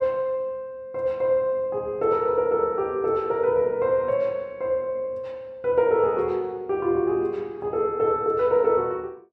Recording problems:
none

